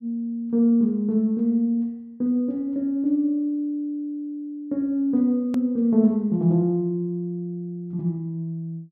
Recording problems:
edit click; at 5.5 s

